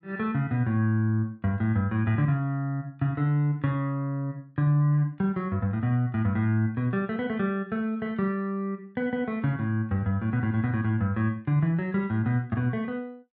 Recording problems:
none

